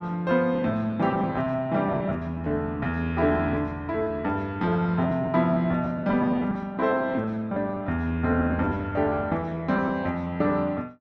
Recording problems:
lost packets; 16% of the sound replaced, filled with repeated pitch periods

